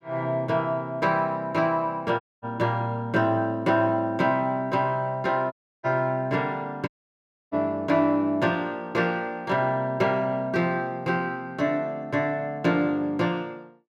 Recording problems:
dropout; at 2 s, at 5.5 s and at 7 s for 0.5 s

